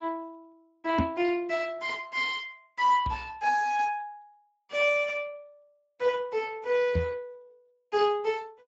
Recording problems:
lossy compression; Speex, log-spectral distance 3 dB, nothing above 7.3 kHz
microphone thump; at 1 s, at 3 s and at 7 s; peak +4 dB vs average level

